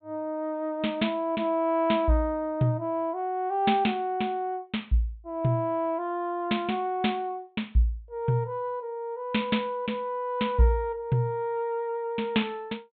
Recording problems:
treble cut off; nothing above 4 kHz

